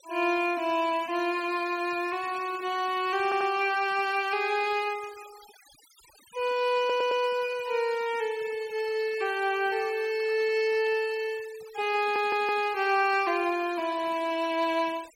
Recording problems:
denoising artefacts; signal-to-artefact ratio 20 dB
stutter; at 3 s, at 7 s and at 12 s

